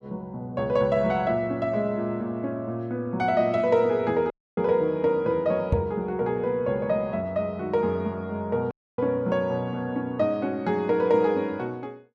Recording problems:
dropout; at 4.5 s and at 8.5 s
knock on the microphone; at 5.5 s; peak +5 dB vs average level

